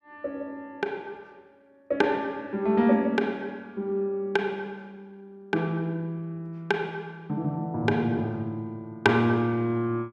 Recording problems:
none

